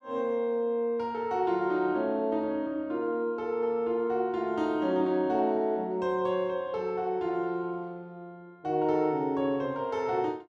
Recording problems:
none

